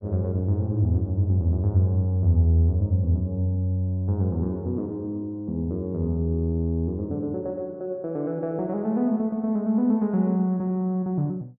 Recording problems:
none

